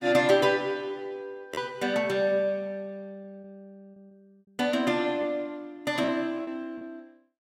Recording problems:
packet loss; 4% of the sound replaced, filled with repeated pitch periods

